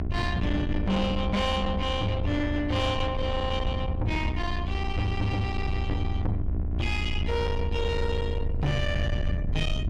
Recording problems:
distorted audio; soft clipping, signal-to-distortion ratio 10 dB
electrical hum; 60 Hz, harmonics up to 1.4 kHz, SNR 9 dB
low-frequency rumble; below 82 Hz, strongest tone 22 Hz, SNR 2 dB

